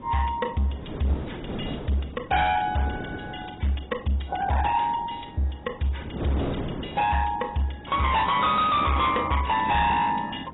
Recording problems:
lossy codec; AAC, log-spectral distance 8 dB, nothing above 3.8 kHz
distorted audio; hard clipping, signal-to-distortion ratio 7 dB
wind on the microphone; below 500 Hz, SNR 13 dB

